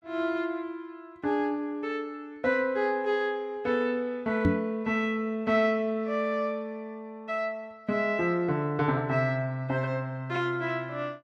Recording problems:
microphone bump; at 4.5 s; peak +8 dB vs average level

